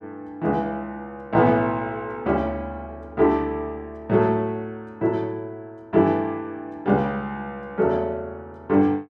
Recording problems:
none

